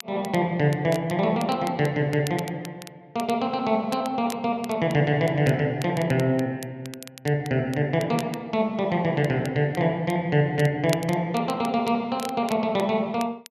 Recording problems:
crackle; vinyl, SNR 18 dB

